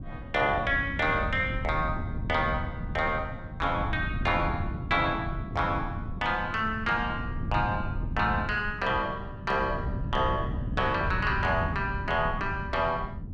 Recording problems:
wind noise; below 160 Hz, SNR 6 dB

